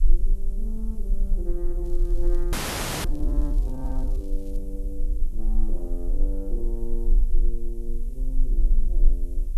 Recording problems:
hiss; slope +3 dB per octave, SNR 22 dB
low-frequency rumble; below 34 Hz, strongest tone 20 Hz, SNR -9 dB
wind noise; below 240 Hz, SNR 18 dB
crackling; from 2 to 4.5 s; loose cable, SNR 21 dB
audio freezing; at 2.5 s for 0.5 s

